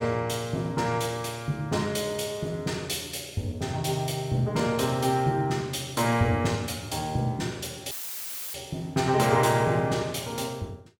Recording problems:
dropout; at 8 s for 0.5 s; filled with static

